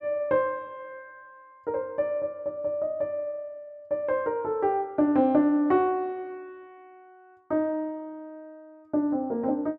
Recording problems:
none

